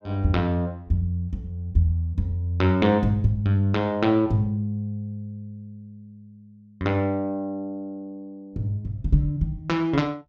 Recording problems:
none

